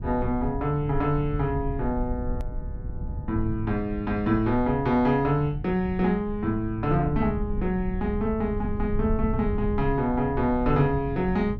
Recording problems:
low-frequency rumble; below 100 Hz, SNR 8 dB
edit click; at 2.5 s

